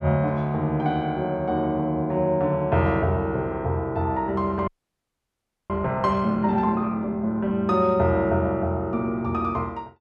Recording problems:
audio freezing; at 4.5 s for 1 s

